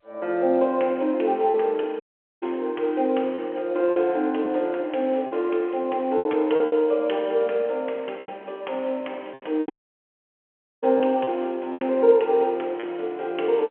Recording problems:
phone line; 280 Hz to 3.3 kHz, G.711
lost packets; 6% of the sound replaced, filled with repeated pitch periods
dropout; at 2 s and at 9.5 s for 1 s

